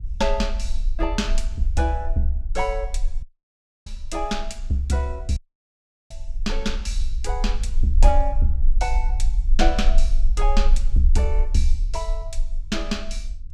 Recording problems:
rumble; below 38 Hz, strongest tone 20 Hz, SNR 0 dB
dropout; at 3 s for 0.5 s and at 5.5 s for 0.5 s

